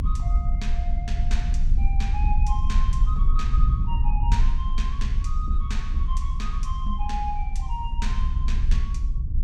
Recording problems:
low-frequency rumble; below 60 Hz, strongest tone 24 Hz, SNR -9 dB

